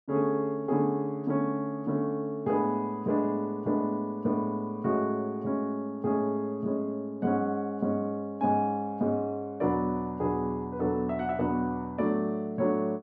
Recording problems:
none

